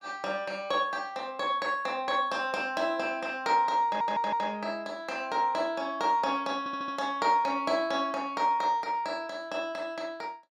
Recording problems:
audio stuttering; at 4 s and at 6.5 s

